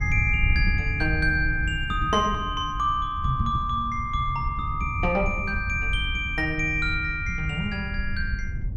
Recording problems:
wind noise; below 94 Hz, SNR 6 dB

